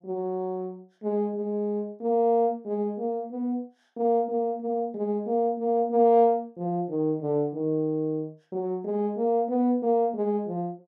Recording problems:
none

